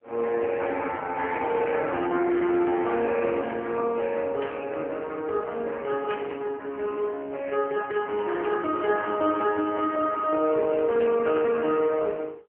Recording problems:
telephone audio; 280 Hz to 3.1 kHz, AMR-NB
burst of static; 4 times, first at 4.5 s; peak -8 dB vs average level

